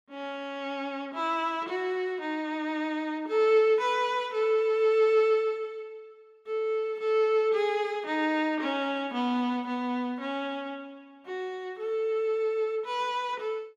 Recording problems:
none

